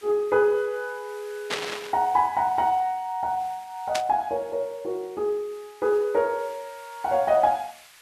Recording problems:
hiss; SNR 24 dB
burst of static; at 1.5 s and at 4 s; peak +2 dB vs average level

